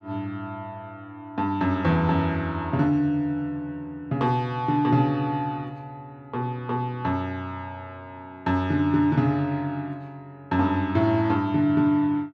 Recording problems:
none

